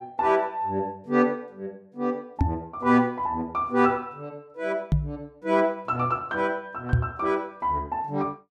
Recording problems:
microphone thump; at 2.5 s, at 5 s and at 7 s; peak +7 dB vs average level

